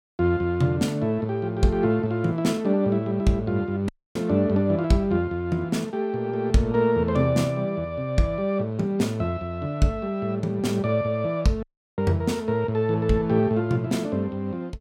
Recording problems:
audio cutting out; at 4 s and at 12 s

